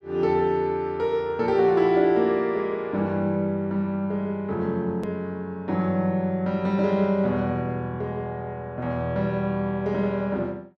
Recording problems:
click at an edit; at 5 s

